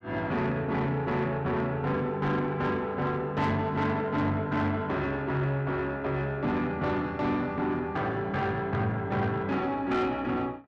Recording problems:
distorted audio; soft clipping, signal-to-distortion ratio 11 dB

